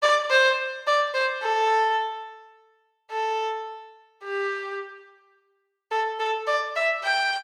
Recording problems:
none

